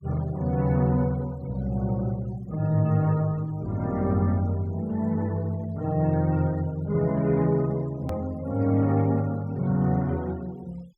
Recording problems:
denoising artefacts; signal-to-artefact ratio 26 dB
edit click; at 8 s

